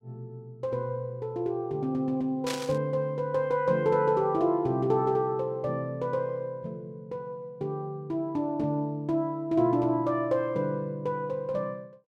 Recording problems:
static burst; at 2.5 s; peak -1 dB vs average level

